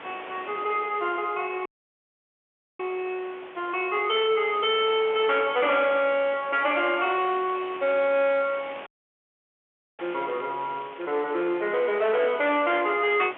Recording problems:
phone line; 280 Hz to 3.5 kHz, G.711
distortion; soft clipping, signal-to-distortion ratio 11 dB
background hiss; SNR 17 dB
dropout; at 1.5 s for 1 s and at 9 s for 1 s
crackle; from 7 to 13 s; loose cable, SNR 27 dB

